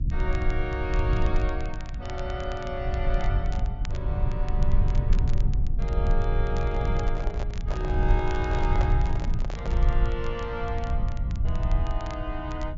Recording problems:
treble missing; nothing above 7.2 kHz
hum; 60 Hz, harmonics up to 300 Hz, SNR 14 dB
low-frequency rumble; below 72 Hz, SNR -5 dB
crackling; vinyl, SNR 16 dB
handling noise; from 6.5 to 10 s; peak +3 dB vs average level

